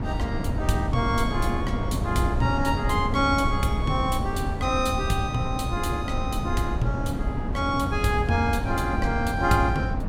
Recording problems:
wind noise; below 230 Hz, SNR 2 dB

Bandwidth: 16 kHz